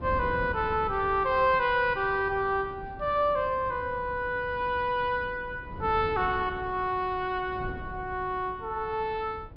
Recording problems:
treble missing; nothing above 5.5 kHz
wind noise; below 260 Hz, SNR 15 dB

